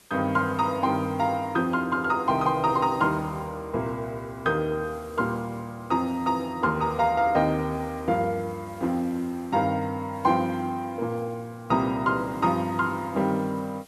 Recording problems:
background hiss; slope -1 dB per octave, SNR 27 dB

